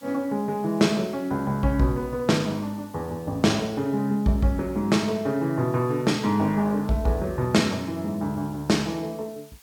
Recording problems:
hiss; SNR 26 dB

